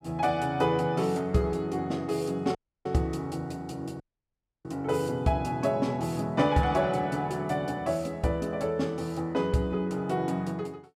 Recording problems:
audio cutting out; at 2.5 s and at 4 s for 0.5 s

